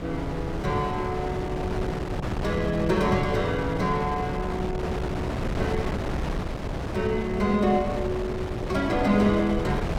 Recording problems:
hum; 60 Hz, harmonics up to 720 Hz, SNR 14 dB
wind noise; below 560 Hz, SNR 5 dB

